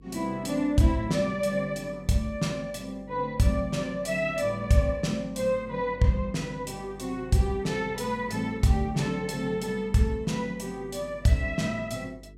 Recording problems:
hum; 50 Hz, harmonics up to 450 Hz, SNR 22 dB

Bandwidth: 16 kHz